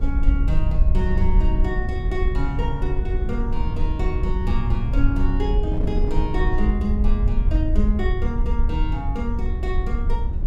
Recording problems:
low-frequency rumble; below 60 Hz, SNR -4 dB
wind noise; below 230 Hz, SNR 6 dB

